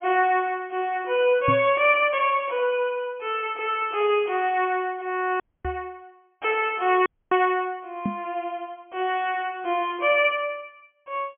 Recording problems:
treble cut off; nothing above 3.3 kHz
knock on the microphone; at 1.5 s, at 5.5 s and at 8 s; peak 0 dB vs average level
audio cutting out; at 5.5 s and at 7 s

